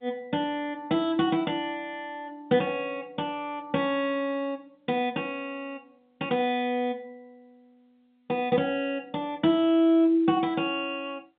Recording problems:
phone line; 150 Hz to 3.6 kHz, G.711

